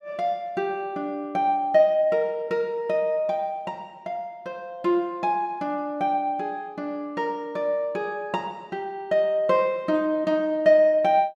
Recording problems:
none

